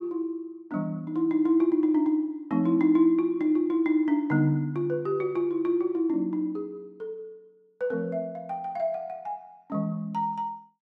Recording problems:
none

